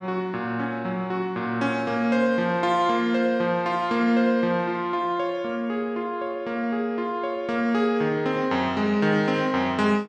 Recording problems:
none

